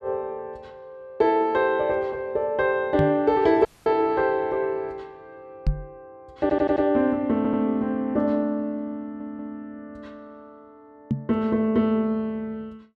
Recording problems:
knock on the microphone; at 3 s, at 5.5 s and at 11 s; peak +3 dB vs average level
audio cutting out; at 3.5 s
audio stuttering; at 6.5 s, at 7.5 s and at 9 s

